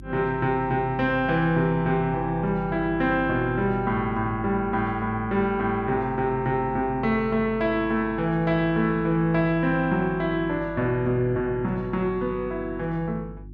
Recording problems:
hum; 50 Hz, harmonics up to 350 Hz, SNR 17 dB

